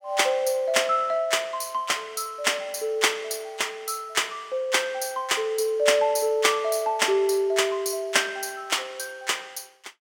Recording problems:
none

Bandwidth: 18 kHz